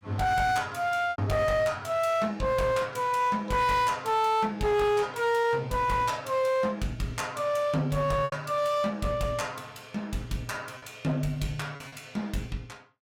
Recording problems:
distortion; hard clipping, uneven, signal-to-distortion ratio 10 dB
packet loss; 2% of the sound replaced, filled with repeated pitch periods

